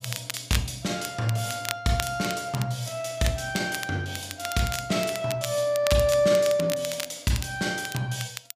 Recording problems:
crackle; vinyl, SNR 10 dB

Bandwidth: 15 kHz